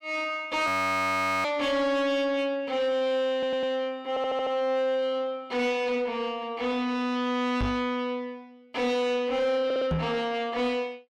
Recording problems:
distorted audio; soft clipping, signal-to-distortion ratio 10 dB
frozen audio; at 0.5 s for 1 s
stutter; at 3.5 s, at 4 s and at 9.5 s
knock on the microphone; at 7.5 s and at 10 s; peak +2 dB vs average level

